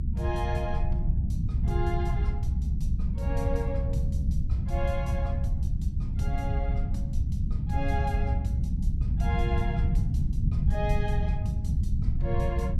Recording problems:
rumble; below 110 Hz, SNR -7 dB

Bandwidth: 15.5 kHz